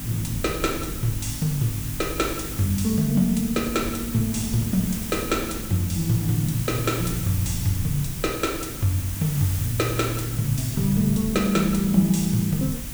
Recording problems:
electrical hum; 50 Hz, harmonics up to 300 Hz, SNR 15 dB
background hiss; slope 0 dB per octave, SNR 9 dB
rumble; below 120 Hz, SNR 15 dB
wind noise; below 220 Hz, SNR 21 dB

